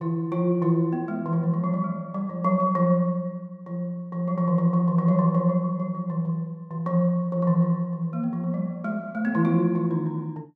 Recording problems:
none

